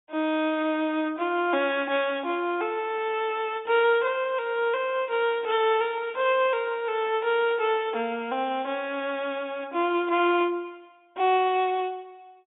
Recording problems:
low-pass filter; nothing above 4 kHz

